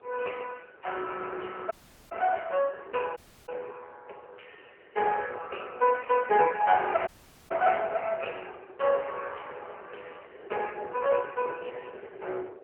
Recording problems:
telephone audio; 320 Hz to 3 kHz, AMR-NB
wind noise; below 630 Hz, SNR 19 dB
dropout; at 1.5 s, at 3 s and at 7 s

